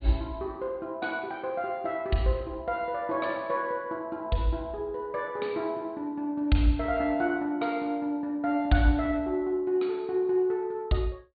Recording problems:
low-pass filter; nothing above 4.6 kHz

